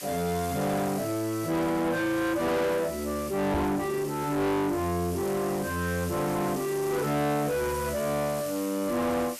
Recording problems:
distorted audio; soft clipping, signal-to-distortion ratio 7 dB
background hiss; slope +1 dB per octave, SNR 12 dB
microphone thump; at 3.5 s; peak +3 dB vs average level

